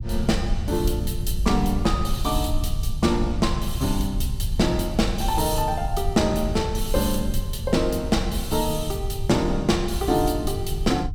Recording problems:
rumble; below 84 Hz, SNR 5 dB

